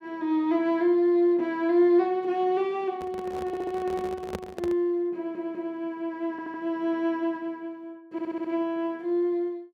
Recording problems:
microphone handling noise; from 3 to 5 s; peak -3 dB vs average level
audio stuttering; 4 times, first at 3.5 s

